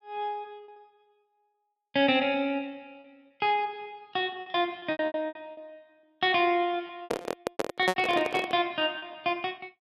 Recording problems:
packet loss; 11% of the sound replaced, filled with repeated pitch periods
handling noise; from 7 to 8.5 s; peak +5 dB vs average level

